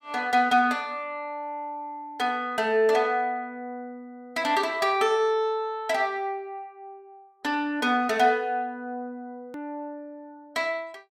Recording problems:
click at an edit; at 9.5 s

